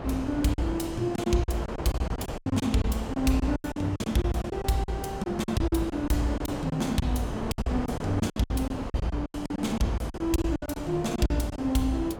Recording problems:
wind on the microphone; below 740 Hz, SNR 7 dB
lost packets; 15% of the sound replaced, filled with silence

